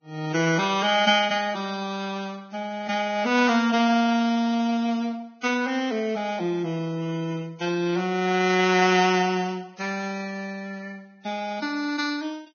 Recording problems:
lossy compression; Vorbis, log-spectral distance 4 dB, nothing above 6.5 kHz

